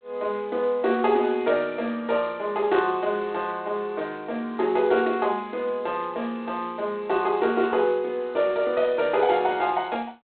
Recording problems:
telephone audio; 220 Hz to 3.8 kHz, G.726

